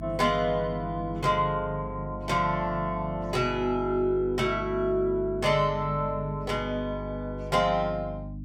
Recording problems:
hum; 50 Hz, harmonics up to 300 Hz, SNR 11 dB

